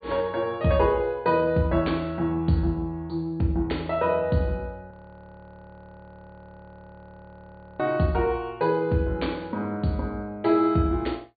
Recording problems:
treble missing; nothing above 4.6 kHz
frozen audio; at 5 s for 3 s

